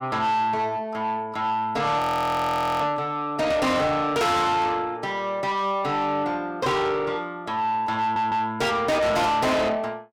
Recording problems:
distorted audio; soft clipping, signal-to-distortion ratio 7 dB
audio freezing; at 2 s for 1 s
stutter; at 8 s

